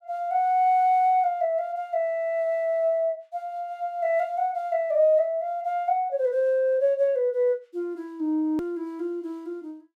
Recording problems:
hard cut with a click; at 8.5 s

